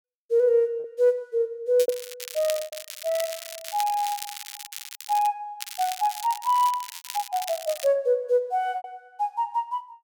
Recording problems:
packet loss; 4% of the sound replaced, filled with repeated pitch periods
crackling; from 2 to 5.5 s and from 5.5 to 8 s; loose cable, SNR 11 dB

